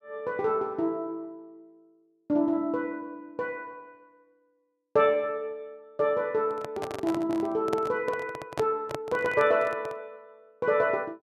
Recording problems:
handling noise; from 6.5 to 10 s; peak 0 dB vs average level

